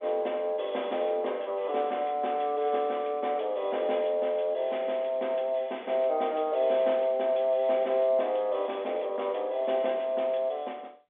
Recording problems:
telephone audio; 300 Hz to 3.6 kHz, G.711

